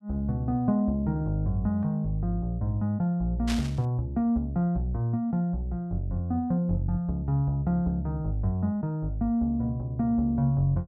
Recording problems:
static burst; at 3.5 s; peak -2 dB vs average level

